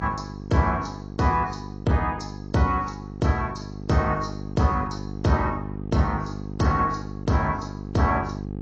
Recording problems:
lossy codec; AAC, log-spectral distance 3 dB
hum; 50 Hz, harmonics up to 800 Hz, SNR 10 dB

